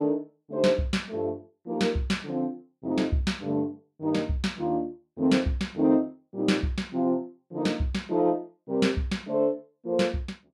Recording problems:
none

